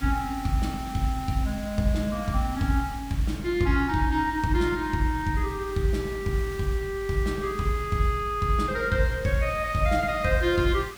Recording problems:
hiss; slope -1 dB per octave, SNR 18 dB

